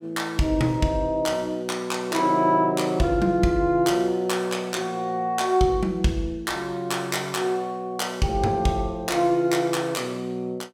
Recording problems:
none

